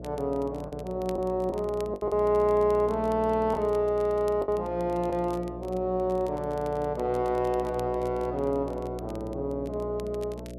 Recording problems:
hum; 60 Hz, harmonics up to 660 Hz, SNR 11 dB
crackle; vinyl, SNR 26 dB
packet loss; 3% of the sound replaced, filled with the last packet

